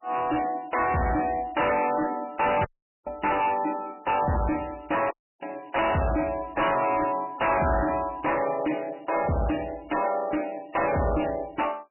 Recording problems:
lossy compression; MP3, log-spectral distance 10 dB, nothing above 2.9 kHz
distortion; hard clipping, signal-to-distortion ratio 5 dB
audio cutting out; at 2.5 s and at 5 s

